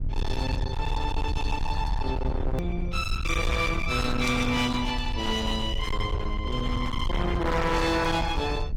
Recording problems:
lossy compression; AAC, log-spectral distance 2 dB, nothing above 15.5 kHz
distortion; hard clipping, uneven, signal-to-distortion ratio 8 dB
low-frequency rumble; below 100 Hz, SNR 3 dB
click at an edit; at 2.5 s

